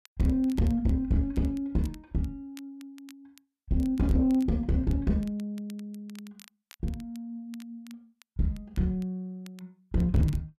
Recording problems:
distortion; soft clipping, signal-to-distortion ratio 8 dB
crackling; vinyl, SNR 27 dB

